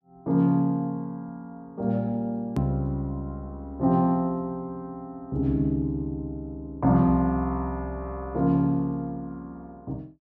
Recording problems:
edit click; at 2.5 s

